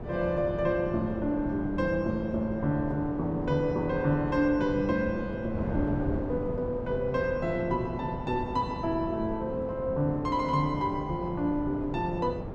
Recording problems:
wind noise; below 410 Hz, SNR 8 dB

